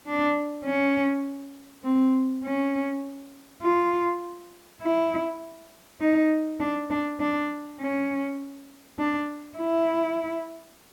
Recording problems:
background hiss; slope -3 dB per octave, SNR 27 dB

